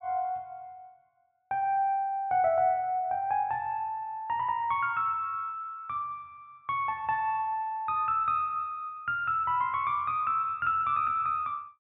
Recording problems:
treble cut off; nothing above 4 kHz

